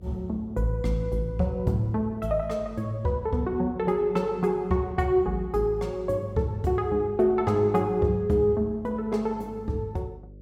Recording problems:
hum; 50 Hz, harmonics up to 600 Hz, SNR 23 dB

